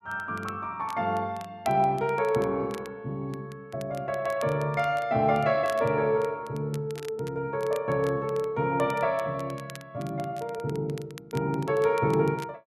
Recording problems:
crackling; vinyl, SNR 22 dB

